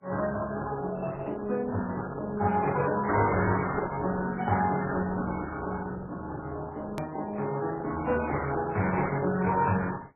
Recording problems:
codec artefacts; Opus, then MP3, log-spectral distance 3 dB, nothing above 13.1 kHz
hard cut with a click; at 7 s

